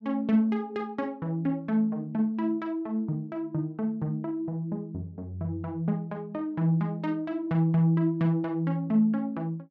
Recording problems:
none

